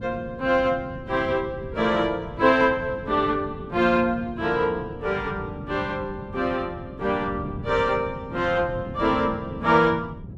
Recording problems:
wind noise; below 220 Hz, SNR 13 dB

